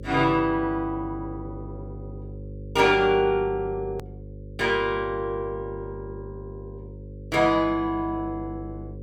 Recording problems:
hum; 50 Hz, harmonics up to 550 Hz, SNR 14 dB
hard cut with a click; at 4 s

